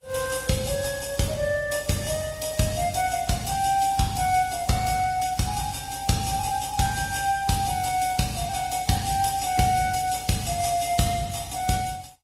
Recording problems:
codec artefacts; Vorbis, then Opus, log-spectral distance 6 dB, nothing above 15.5 kHz

